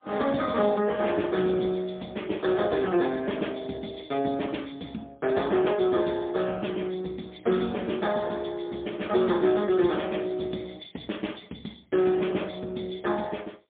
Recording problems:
telephone audio; 150 Hz to 3.4 kHz, AMR-NB, then MP3

